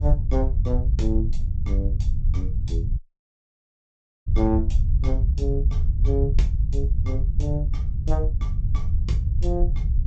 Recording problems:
treble missing; nothing above 8 kHz
rumble; below 78 Hz, SNR -6 dB
audio cutting out; at 3 s for 1.5 s

